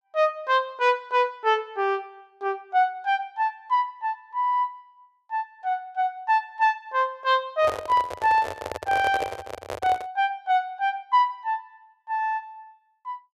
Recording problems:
handling noise; from 7.5 to 10 s; peak -1 dB vs average level

